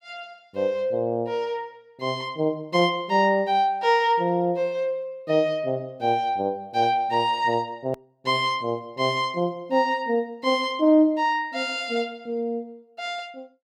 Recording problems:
hard cut with a click; at 8 s

